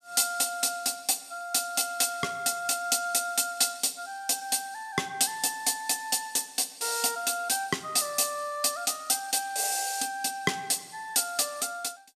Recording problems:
none

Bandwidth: 14.5 kHz